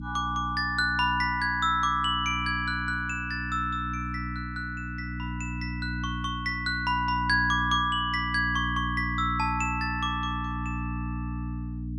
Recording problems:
hum; 60 Hz, harmonics up to 300 Hz, SNR 7 dB

